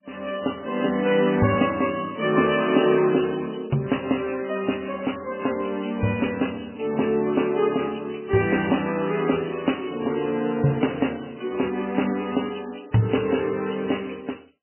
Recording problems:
lossy compression; MP2, then MP3, log-spectral distance 10 dB, nothing above 3 kHz

